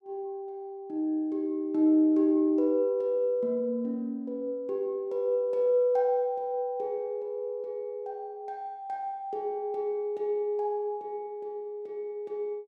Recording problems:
none

